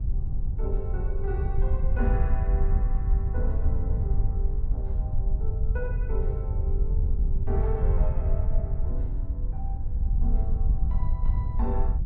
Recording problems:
wind on the microphone; below 68 Hz, SNR -11 dB

